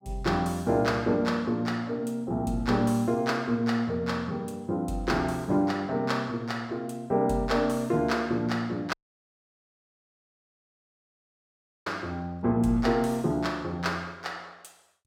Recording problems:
audio cutting out; at 9 s for 3 s

